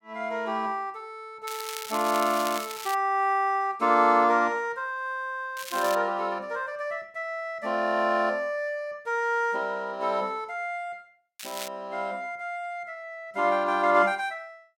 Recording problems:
crackling; from 1.5 to 3 s, at 5.5 s and at 11 s; loose cable, SNR 11 dB

